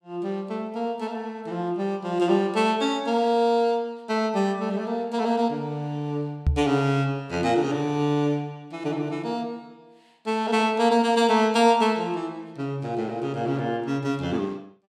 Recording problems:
microphone bump; at 6.5 s; peak +5 dB vs average level

